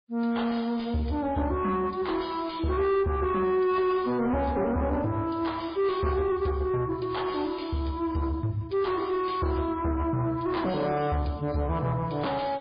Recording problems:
lossy compression; MP3, log-spectral distance 3 dB, nothing above 4.2 kHz
distorted audio; soft clipping, signal-to-distortion ratio 9 dB

